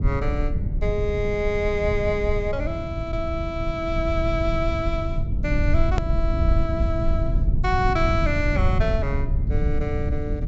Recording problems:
low-pass filter; nothing above 8 kHz
low-frequency rumble; below 96 Hz, SNR 0 dB
edit click; at 6 s

